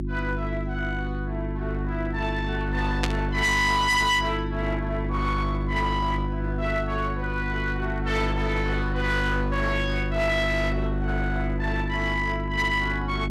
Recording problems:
distortion; hard clipping, signal-to-distortion ratio 11 dB
hum; 50 Hz, harmonics up to 550 Hz, SNR 2 dB
static burst; at 3 s; peak +4 dB vs average level

